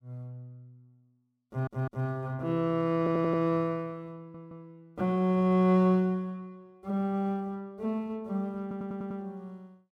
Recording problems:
audio stuttering; 4 times, first at 1.5 s

